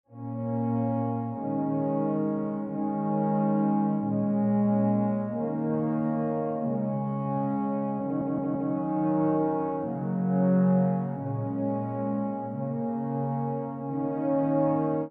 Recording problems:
audio stuttering; at 8 s

